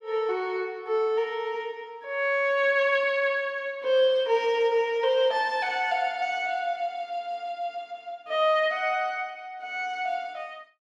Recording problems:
none

